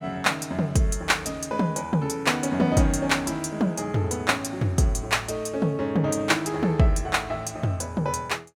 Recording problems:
none

